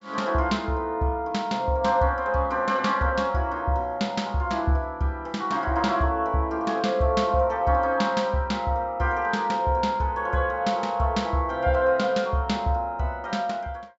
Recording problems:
treble missing; nothing above 8 kHz

